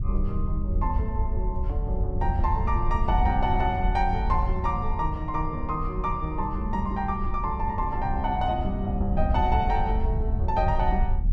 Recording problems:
wind on the microphone; below 74 Hz, SNR 1 dB

